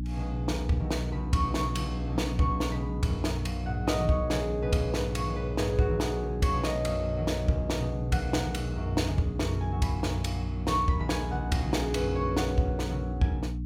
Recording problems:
hum; 60 Hz, harmonics up to 300 Hz, SNR 4 dB

